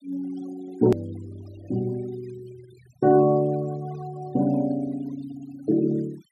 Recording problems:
noise reduction artefacts; signal-to-artefact ratio 22 dB
hard cut with a click; at 1 s

